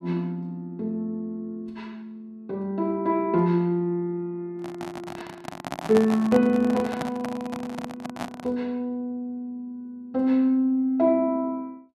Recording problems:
handling noise; from 4.5 to 8.5 s; peak +1 dB vs average level

